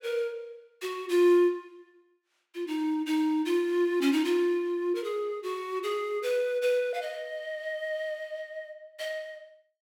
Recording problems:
none

